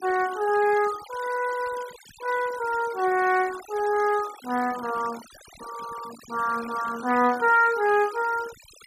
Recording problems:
denoising artefacts; signal-to-artefact ratio 17 dB

